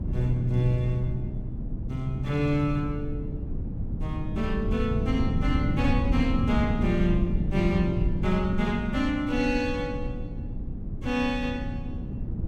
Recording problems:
rumble; below 160 Hz, SNR 3 dB

